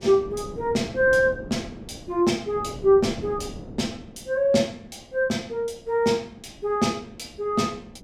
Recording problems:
wind on the microphone; below 380 Hz, SNR 17 dB

